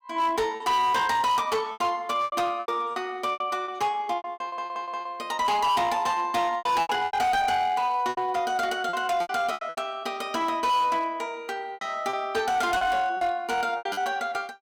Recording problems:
distorted audio; hard clipping, signal-to-distortion ratio 11 dB
lost packets; 11% of the sound replaced, filled with repeated pitch periods
audio stuttering; at 4.5 s

